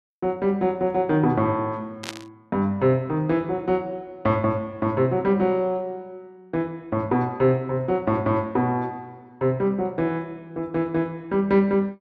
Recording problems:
burst of static; at 2 s; peak -4 dB vs average level

